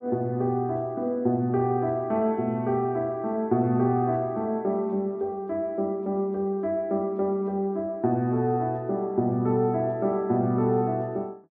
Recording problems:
none

